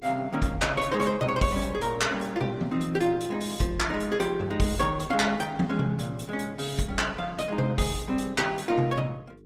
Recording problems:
lossy codec; Opus, log-spectral distance 3 dB
hum; 50 Hz, harmonics up to 450 Hz, SNR 24 dB

